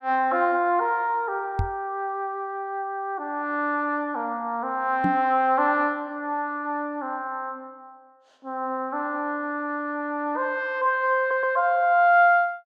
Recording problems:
knock on the microphone; at 1.5 s and at 5 s; peak +2 dB vs average level
audio stuttering; at 11 s

